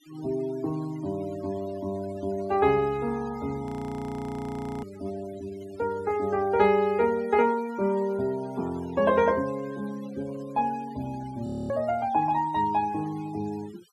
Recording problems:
noise reduction artefacts; signal-to-artefact ratio 21 dB
audio freezing; at 3.5 s for 1 s and at 11 s

